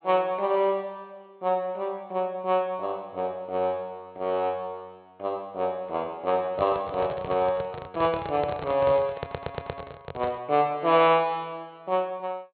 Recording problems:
treble cut off; nothing above 4.4 kHz
handling noise; from 6.5 to 10 s; peak -2 dB vs average level
stutter; at 9 s

